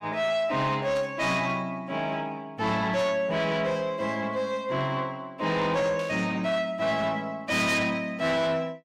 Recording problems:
distortion; soft clipping, signal-to-distortion ratio 10 dB
burst of static; at 1 s, at 3 s and at 6 s; peak -12 dB vs average level

